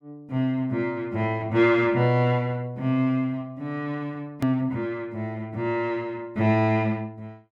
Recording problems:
click at an edit; at 4.5 s

